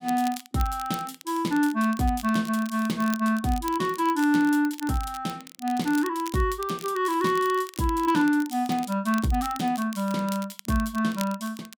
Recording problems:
crackling; vinyl, SNR 17 dB

